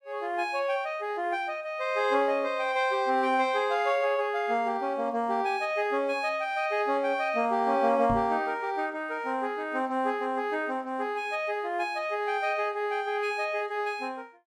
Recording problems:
knock on the microphone; at 8 s; peak -2 dB vs average level

